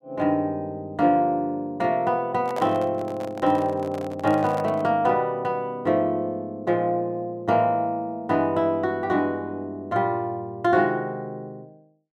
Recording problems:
microphone handling noise; from 2.5 to 5 s; peak -4 dB vs average level

